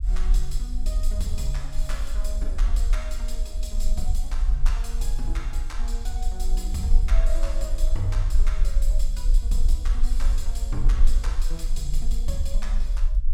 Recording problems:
low-frequency rumble; below 40 Hz, strongest tone 20 Hz, SNR -8 dB

